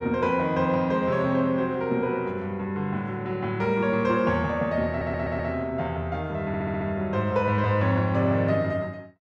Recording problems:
audio stuttering; at 5 s and at 6.5 s

